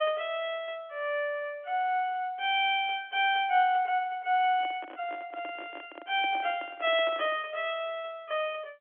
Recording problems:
phone line; 260 Hz to 3.4 kHz, G.711
handling noise; from 4.5 to 7.5 s; peak -10 dB vs average level

